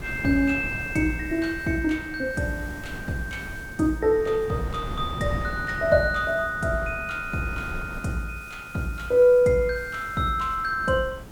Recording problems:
hiss; slope -1 dB per octave, SNR 26 dB
wind on the microphone; below 350 Hz, SNR 14 dB

